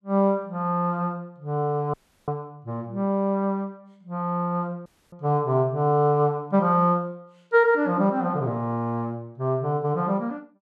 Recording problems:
dropout; at 2 s and at 5 s

